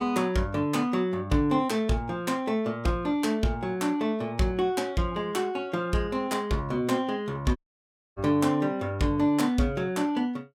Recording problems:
dropout; at 7.5 s for 0.5 s

